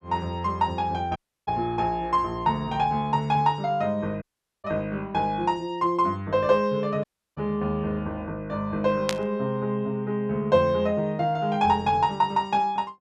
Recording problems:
dropout; at 1 s, at 4 s and at 7 s
burst of static; at 9 s; peak +3 dB vs average level

